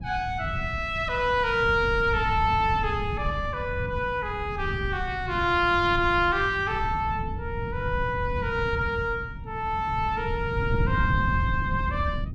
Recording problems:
wind noise; below 140 Hz, SNR 7 dB

